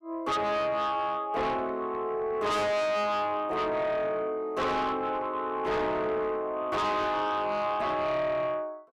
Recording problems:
distortion; soft clipping, signal-to-distortion ratio 7 dB

